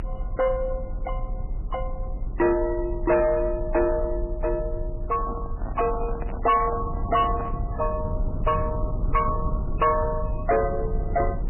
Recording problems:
lossy codec; MP3, log-spectral distance 2 dB, nothing above 2.7 kHz
distorted audio; soft clipping, signal-to-distortion ratio 11 dB
low-frequency rumble; below 80 Hz, SNR 6 dB
handling noise; from 5 to 7.5 s; peak -5 dB vs average level

